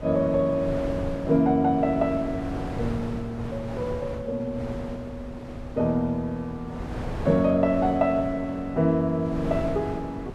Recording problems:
wind on the microphone; below 510 Hz, SNR 11 dB

